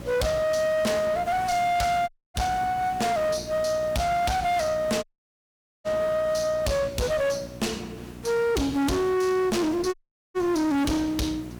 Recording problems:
distortion; hard clipping, uneven, signal-to-distortion ratio 6 dB
hum; 60 Hz, harmonics up to 1 kHz, SNR 19 dB
background hiss; slope -5 dB per octave, SNR 20 dB
dropout; at 2 s, at 5 s for 1 s and at 10 s

